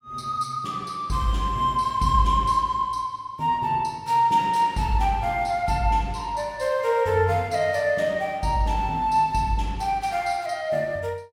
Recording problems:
none

